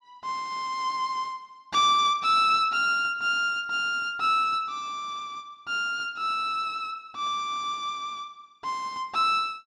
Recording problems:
none

